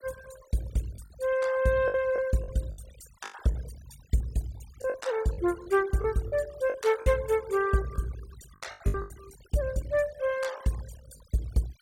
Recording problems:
denoising artefacts; signal-to-artefact ratio 20 dB
lost packets; 9% of the sound replaced, filled with the last packet

